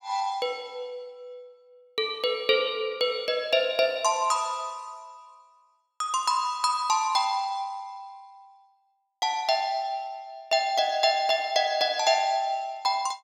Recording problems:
none

